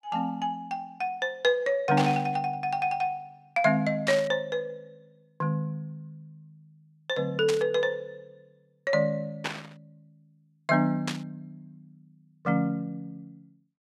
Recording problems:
burst of static; 5 times, first at 2 s; peak +1 dB vs average level

